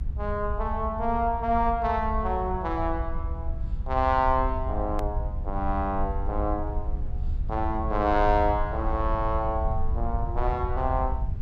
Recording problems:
rumble; below 72 Hz, SNR 4 dB
hard cut with a click; at 5 s

